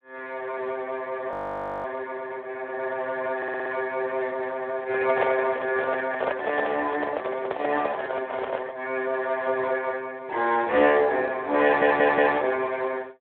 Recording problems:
telephone audio; 320 Hz to 3.6 kHz, Speex
audio freezing; at 1.5 s for 0.5 s
audio stuttering; at 3.5 s and at 12 s
handling noise; from 5 to 9 s; peak +3 dB vs average level

